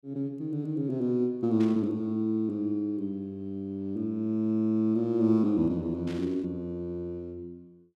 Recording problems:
burst of static; at 1.5 s and at 6 s; peak -13 dB vs average level

